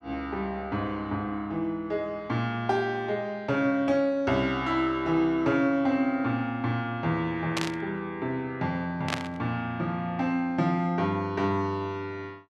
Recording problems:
static burst; at 7.5 s and at 9 s; peak +3 dB vs average level

